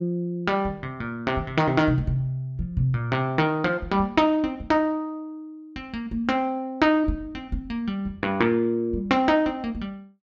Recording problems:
none

